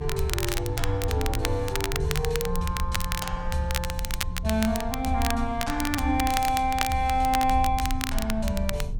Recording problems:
rumble; below 76 Hz, strongest tone 24 Hz, SNR 8 dB
crackling; vinyl, SNR 6 dB

